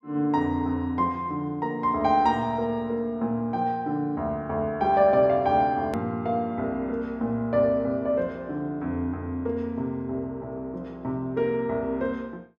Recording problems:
hard cut with a click; at 6 s

